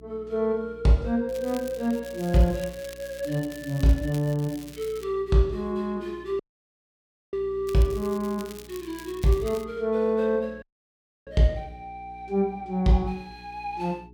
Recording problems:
hum; 60 Hz, harmonics up to 420 Hz, SNR 23 dB
crackle; from 1.5 to 5 s and from 7.5 to 9.5 s; loose cable, SNR 19 dB
audio cutting out; at 6.5 s for 1 s and at 11 s for 0.5 s

